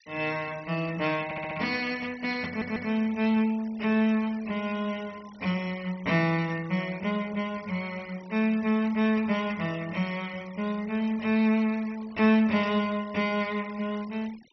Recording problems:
treble cut off; nothing above 6 kHz
noise reduction artefacts; signal-to-artefact ratio 21 dB
stutter; at 1 s and at 2.5 s

